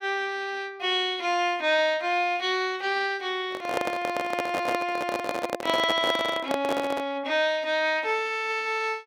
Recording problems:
handling noise; from 3.5 to 7 s; peak +2 dB vs average level

